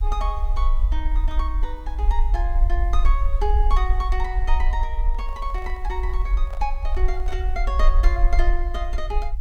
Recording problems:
background hiss; slope 0 dB per octave, SNR 30 dB
rumble; below 48 Hz, SNR -7 dB
microphone handling noise; from 5 to 7.5 s; peak -7 dB vs average level

